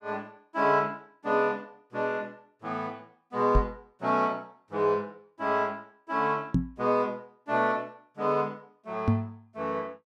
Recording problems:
knock on the microphone; at 3.5 s, at 6.5 s and at 9 s; peak +9 dB vs average level

